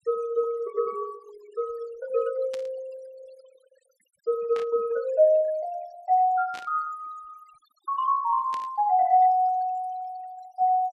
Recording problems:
denoising artefacts; signal-to-artefact ratio 22 dB
burst of static; 4 times, first at 2.5 s; peak -12 dB vs average level

